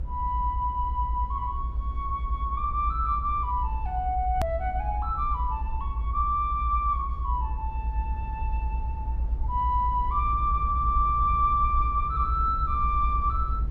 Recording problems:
rumble; below 64 Hz, strongest tone 54 Hz, SNR 4 dB
edit click; at 4.5 s

